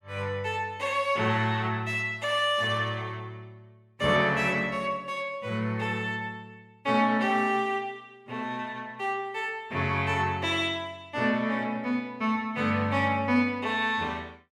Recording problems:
none

